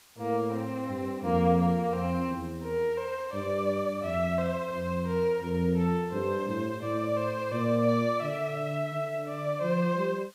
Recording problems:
background hiss; slope +1 dB per octave, SNR 26 dB

